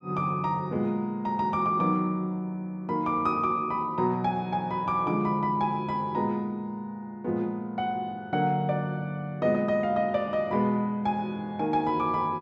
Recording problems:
none

